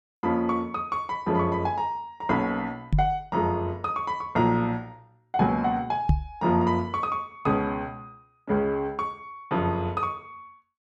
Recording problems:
microphone bump; at 3 s and at 6 s; peak +9 dB vs average level

